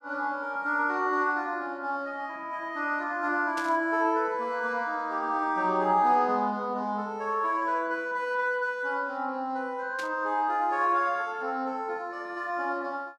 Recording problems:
static burst; at 3.5 s and at 10 s; peak -8 dB vs average level

